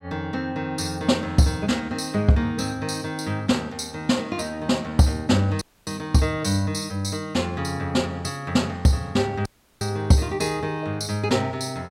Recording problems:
dropout; at 5.5 s and at 9.5 s

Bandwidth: 16 kHz